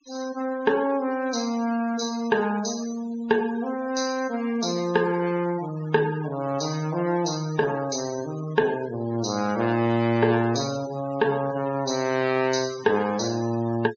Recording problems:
treble cut off; nothing above 8 kHz
noise reduction artefacts; signal-to-artefact ratio 17 dB

